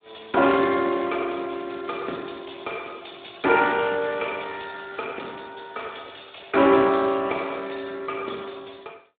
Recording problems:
telephone audio; 240 Hz to 3.6 kHz, Speex

